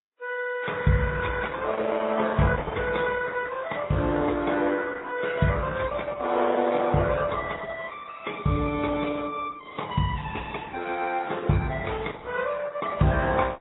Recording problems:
codec artefacts; Opus, then AAC, log-spectral distance 4 dB, nothing above 3.8 kHz

